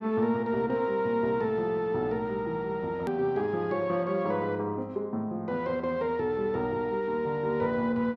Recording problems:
click at an edit; at 3 s

